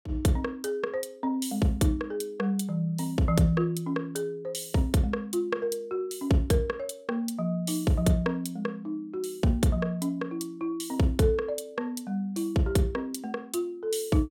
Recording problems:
none

